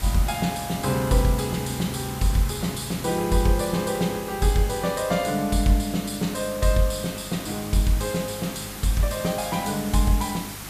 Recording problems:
hum; 50 Hz, harmonics up to 550 Hz, SNR 20 dB
background hiss; slope -2 dB per octave, SNR 12 dB

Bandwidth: 14.5 kHz